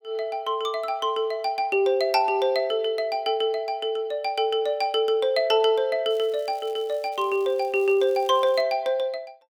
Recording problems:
crackle; from 6 to 8.5 s; loose cable, SNR 28 dB

